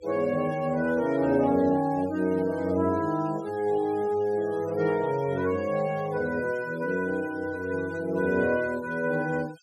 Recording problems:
noise reduction artefacts; signal-to-artefact ratio 22 dB

